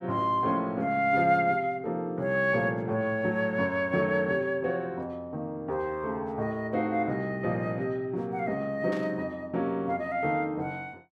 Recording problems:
burst of static; at 9 s; peak -11 dB vs average level

